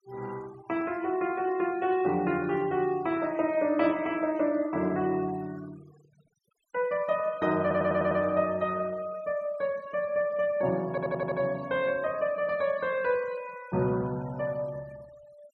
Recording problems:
noise reduction artefacts; signal-to-artefact ratio 23 dB
audio stuttering; at 7.5 s and at 11 s

